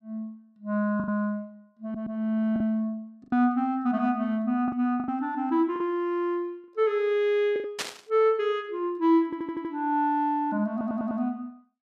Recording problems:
lost packets; 5% of the sound replaced, filled with the last packet
stutter; at 2 s, at 9.5 s and at 11 s
static burst; at 8 s; peak +1 dB vs average level

